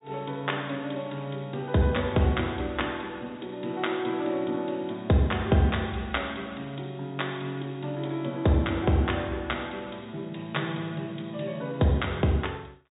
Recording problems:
treble cut off; nothing above 4 kHz

